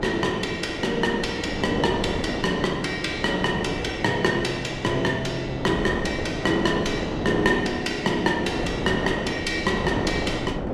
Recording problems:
wind noise; below 590 Hz, SNR 5 dB

